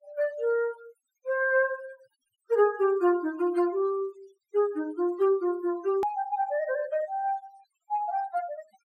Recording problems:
denoising artefacts; signal-to-artefact ratio 21 dB
click at an edit; at 6 s

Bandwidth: 16 kHz